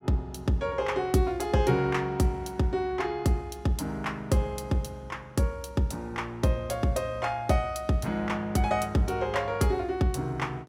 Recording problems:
none

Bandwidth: 16 kHz